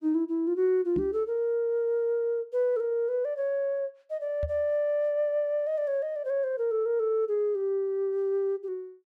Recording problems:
knock on the microphone; at 1 s and at 4.5 s; peak -1 dB vs average level

